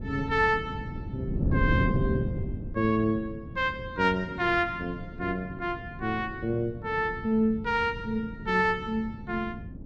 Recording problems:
wind on the microphone; below 210 Hz, SNR 7 dB

